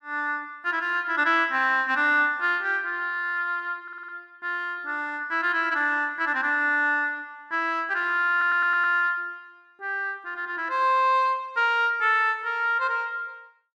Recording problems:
stutter; at 4 s and at 8.5 s

